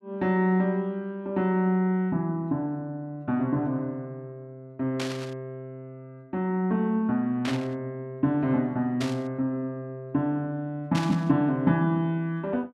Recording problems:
burst of static; 4 times, first at 5 s; peak -2 dB vs average level

